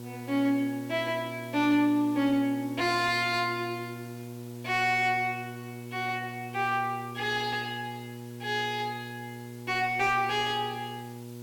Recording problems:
distortion; soft clipping, signal-to-distortion ratio 9 dB
electrical hum; 60 Hz, harmonics up to 960 Hz, SNR 13 dB
hiss; slope 0 dB per octave, SNR 24 dB

